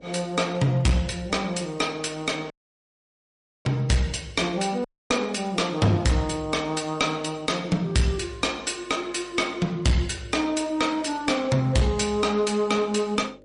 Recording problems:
lossy codec; MP3, log-spectral distance 3 dB, nothing above 10.4 kHz
distortion; hard clipping, uneven, signal-to-distortion ratio 11 dB
hum; 50 Hz, harmonics up to 600 Hz, SNR 27 dB
audio cutting out; at 2.5 s for 1 s and at 5 s

